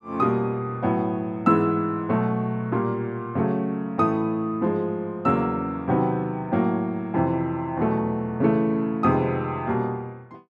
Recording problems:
none

